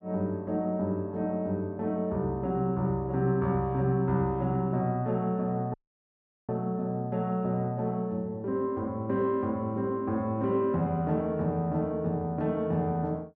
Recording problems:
dropout; at 5.5 s for 1 s

